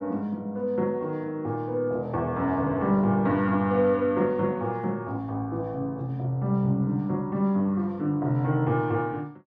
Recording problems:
none

